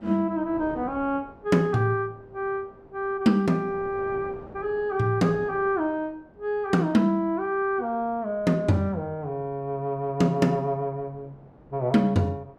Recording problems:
wind noise; below 610 Hz, SNR 22 dB

